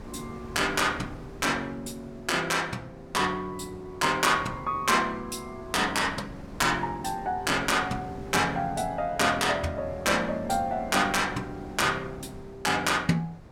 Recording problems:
wind noise; below 480 Hz, SNR 18 dB

